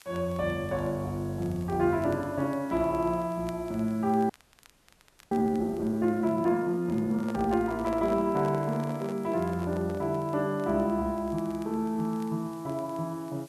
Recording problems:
background hiss; slope +1 dB per octave, SNR 27 dB
crackling; vinyl, SNR 30 dB
audio freezing; at 4.5 s for 1 s
handling noise; from 7 to 10 s; peak -6 dB vs average level

